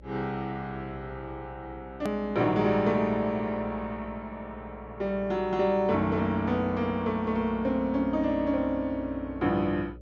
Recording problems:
treble cut off; nothing above 8 kHz
hum; 60 Hz, harmonics up to 600 Hz, SNR 20 dB
click at an edit; at 2 s

